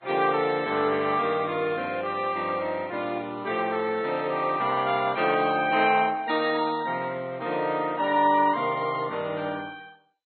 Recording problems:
lossy compression; Vorbis, then MP2, log-spectral distance 3 dB, nothing above 3.6 kHz

